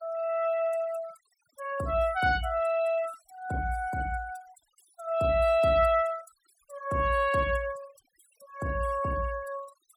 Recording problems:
noise reduction artefacts; signal-to-artefact ratio 21 dB

